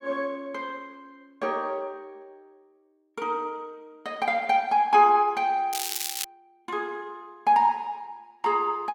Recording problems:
crackle; at 5.5 s; loose cable, SNR 5 dB

